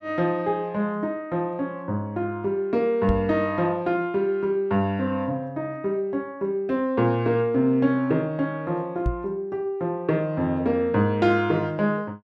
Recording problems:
knock on the microphone; at 3 s and at 9 s; peak +2 dB vs average level

